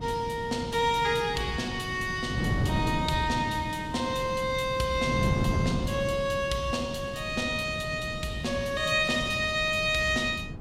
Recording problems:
wind noise; below 240 Hz, SNR 6 dB

